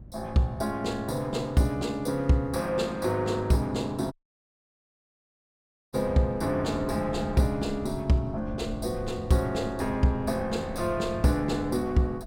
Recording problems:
wind noise; below 150 Hz, SNR 16 dB
audio cutting out; at 4 s for 2 s

